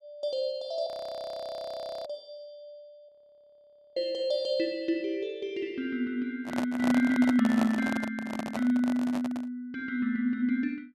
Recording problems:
frozen audio; at 1 s for 1 s and at 3 s for 1 s
microphone handling noise; from 6.5 to 9.5 s; peak +2 dB vs average level

